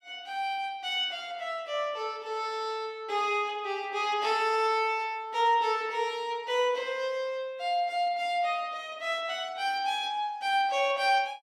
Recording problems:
none

